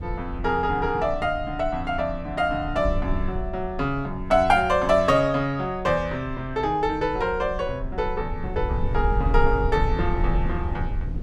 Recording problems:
low-frequency rumble; below 76 Hz, SNR 7 dB

